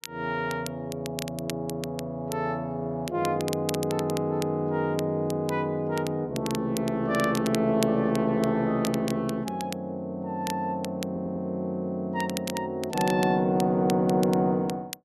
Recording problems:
crackle; vinyl, SNR 13 dB
stutter; at 11 s

